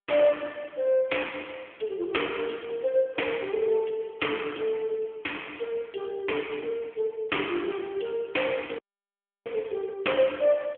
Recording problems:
telephone audio; 260 Hz to 3.4 kHz, AMR-NB
dropout; at 9 s for 0.5 s

